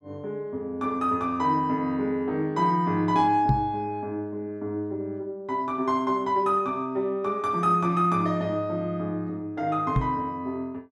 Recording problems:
microphone bump; at 3.5 s and at 10 s; peak +6 dB vs average level

